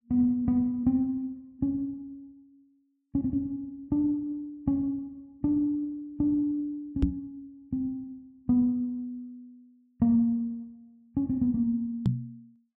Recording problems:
microphone bump; at 7 s and at 12 s; peak +8 dB vs average level

